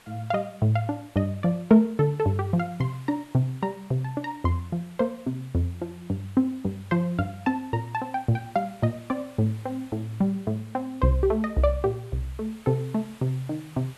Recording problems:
background hiss; SNR 25 dB

